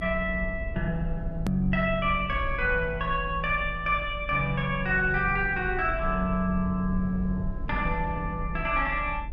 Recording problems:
low-frequency rumble; below 70 Hz, SNR 9 dB
click at an edit; at 1.5 s

